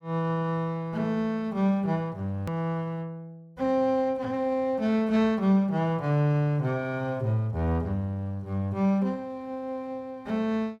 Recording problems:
edit click; at 2.5 s

